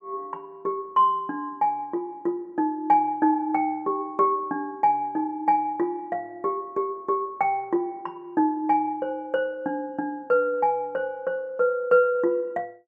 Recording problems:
none

